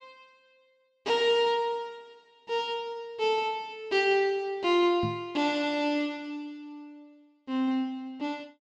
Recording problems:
knock on the microphone; at 5 s; peak -1 dB vs average level

